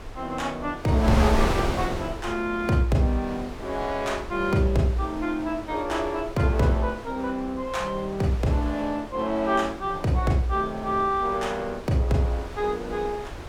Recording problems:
wind noise; below 890 Hz, SNR 9 dB

